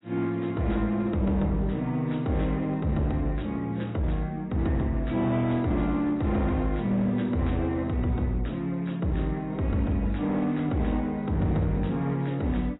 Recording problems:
codec artefacts; AAC, log-spectral distance 2 dB, nothing above 3.8 kHz
distortion; hard clipping, uneven, signal-to-distortion ratio 11 dB

